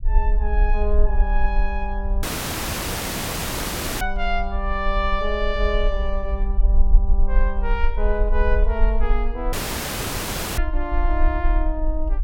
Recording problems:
low-frequency rumble; below 44 Hz, strongest tone 20 Hz, SNR -3 dB
audio cutting out; at 2 s for 2 s and at 9.5 s for 1 s

